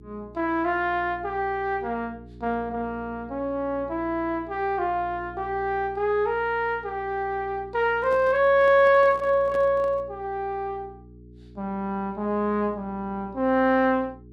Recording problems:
mains hum; 60 Hz, harmonics up to 420 Hz, SNR 22 dB
handling noise; from 8 to 10 s; peak -11 dB vs average level

